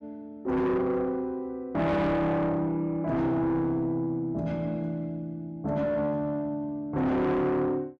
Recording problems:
distorted audio; soft clipping, signal-to-distortion ratio 8 dB

